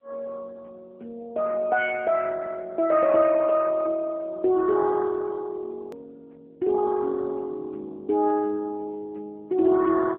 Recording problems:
telephone audio; 280 Hz to 2.9 kHz, AMR-NB
edit click; at 6 s

